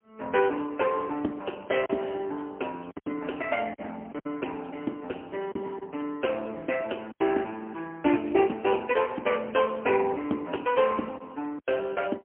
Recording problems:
phone line; 240 Hz to 3.2 kHz, AMR-NB, then MP3
packet loss; 4% of the sound replaced, filled with silence

